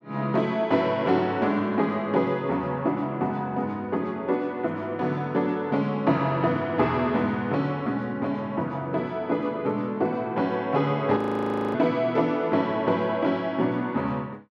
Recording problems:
frozen audio; at 11 s for 0.5 s

